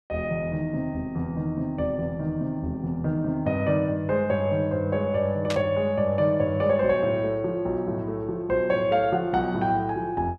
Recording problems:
static burst; at 5.5 s; peak -2 dB vs average level

